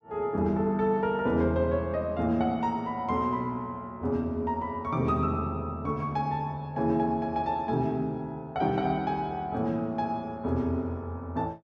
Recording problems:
none

